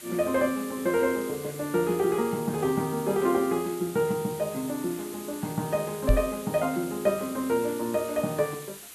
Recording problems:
hiss; slope 0 dB per octave, SNR 14 dB
knock on the microphone; at 6 s; peak +7 dB vs average level

